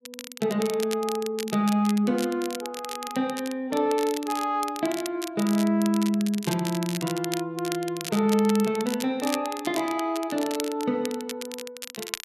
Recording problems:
crackling; vinyl, SNR 11 dB

